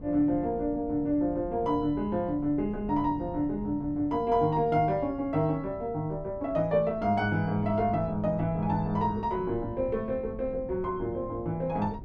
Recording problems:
wind noise; below 220 Hz, SNR 16 dB

